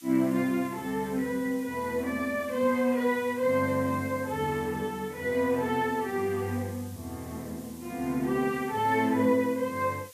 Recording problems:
background hiss; slope +4 dB per octave, SNR 21 dB

